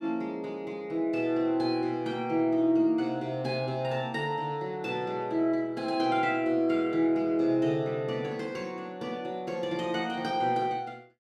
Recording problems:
none

